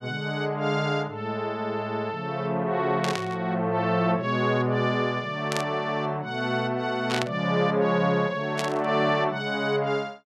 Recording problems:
static burst; 4 times, first at 3 s; peak +1 dB vs average level

